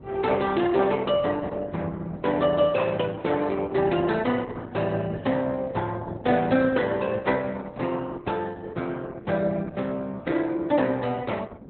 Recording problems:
codec artefacts; Opus, log-spectral distance 4 dB, nothing above 4 kHz
wind noise; below 380 Hz, SNR 19 dB

